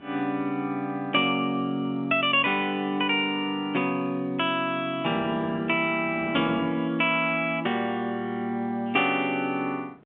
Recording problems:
phone line; 190 Hz to 3.6 kHz, G.711
wind noise; below 480 Hz, SNR 18 dB

